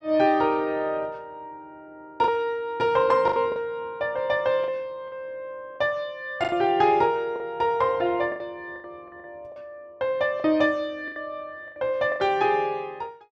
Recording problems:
packet loss; 7% of the sound replaced, filled with the last packet

